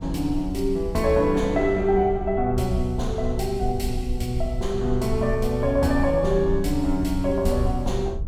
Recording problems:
rumble; below 68 Hz, SNR 9 dB

